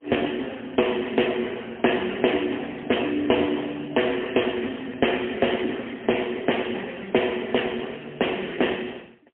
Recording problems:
telephone audio; 220 Hz to 3.3 kHz, AMR-NB, then MP3

